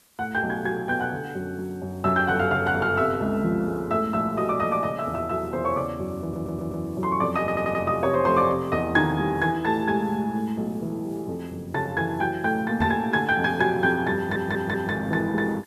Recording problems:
hiss; slope -1 dB per octave, SNR 30 dB
audio stuttering; at 6 s, at 7.5 s and at 14 s
microphone thump; at 13 s; peak -1 dB vs average level

